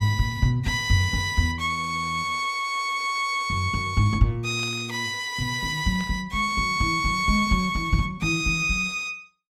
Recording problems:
burst of static; at 4.5 s and at 6 s; peak -13 dB vs average level

